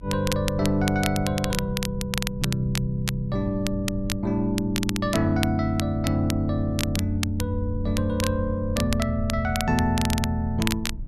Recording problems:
electrical hum; 60 Hz, harmonics up to 960 Hz, SNR 25 dB
low-frequency rumble; below 88 Hz, SNR 12 dB
crackle; vinyl, SNR 8 dB

